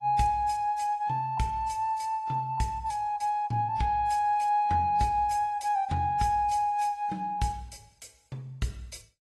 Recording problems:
lossy compression; AAC, log-spectral distance 2 dB, nothing above 12 kHz

